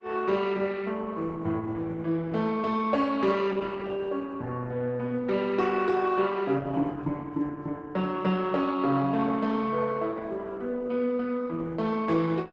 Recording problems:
codec artefacts; Opus, log-spectral distance 3 dB, nothing above 7.3 kHz

